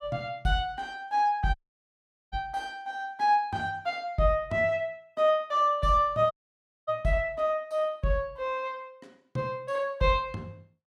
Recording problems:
audio cutting out; at 1.5 s for 1 s and at 6.5 s for 0.5 s

